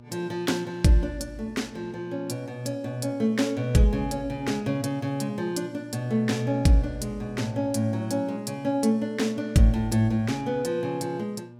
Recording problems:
mains hum; 60 Hz, harmonics up to 1.2 kHz, SNR 19 dB

